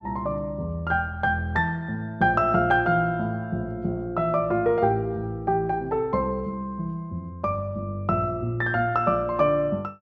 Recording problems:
none

